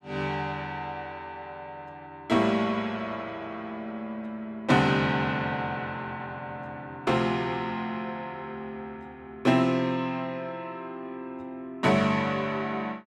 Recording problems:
none

